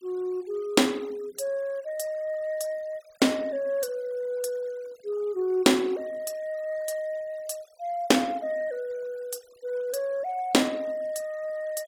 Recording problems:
denoising artefacts; signal-to-artefact ratio 26 dB

